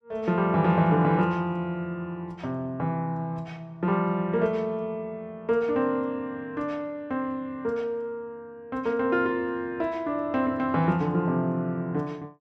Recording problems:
none

